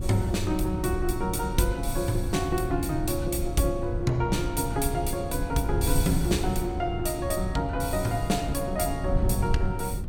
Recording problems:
wind on the microphone; below 110 Hz, SNR 4 dB

